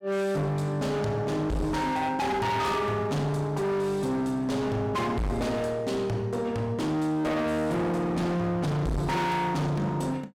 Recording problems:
distortion; hard clipping, signal-to-distortion ratio 6 dB

